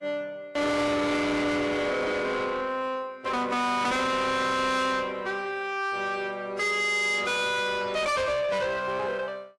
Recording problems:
lossy codec; AAC, log-spectral distance 2 dB, nothing above 11.3 kHz
distortion; soft clipping, signal-to-distortion ratio 7 dB

